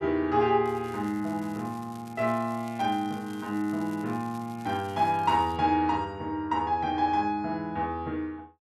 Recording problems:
crackle; from 0.5 to 5.5 s; loose cable, SNR 25 dB

